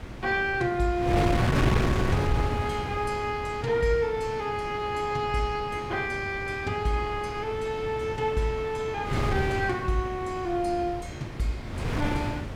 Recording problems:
wind on the microphone; below 500 Hz, SNR 3 dB

